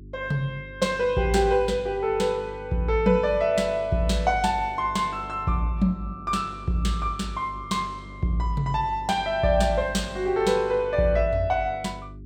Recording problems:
electrical hum; 50 Hz, harmonics up to 400 Hz, SNR 18 dB

